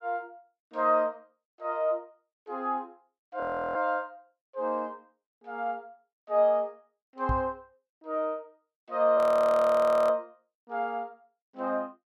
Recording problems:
frozen audio; at 3.5 s and at 9 s for 1 s
microphone thump; at 7.5 s; peak +1 dB vs average level

